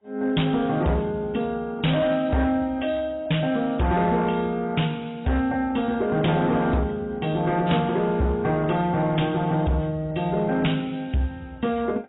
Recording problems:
lossy codec; AAC, log-spectral distance 3 dB, nothing above 3.8 kHz
distortion; hard clipping, signal-to-distortion ratio 11 dB

